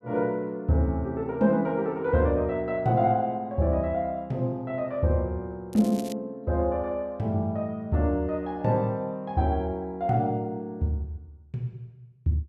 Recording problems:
crackle; at 5.5 s; loose cable, SNR 19 dB

